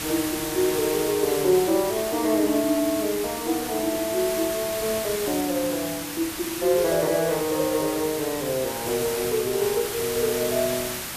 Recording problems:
hiss; slope -1 dB per octave, SNR 6 dB

